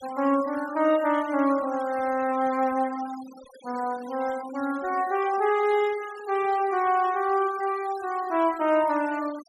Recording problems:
denoising artefacts; signal-to-artefact ratio 19 dB

